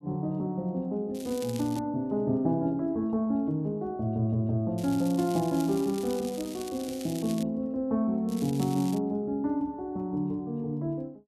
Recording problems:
crackle; at 1 s, from 5 to 7.5 s and at 8.5 s; loose cable, SNR 15 dB

